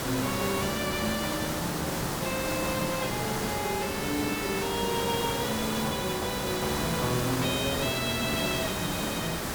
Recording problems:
hiss; slope -4 dB per octave, SNR 1 dB

